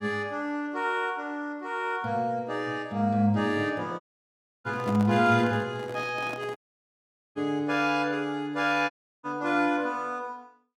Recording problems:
dropout; at 4 s for 0.5 s, at 6.5 s for 1 s and at 9 s
microphone handling noise; from 4.5 to 6.5 s; peak -5 dB vs average level

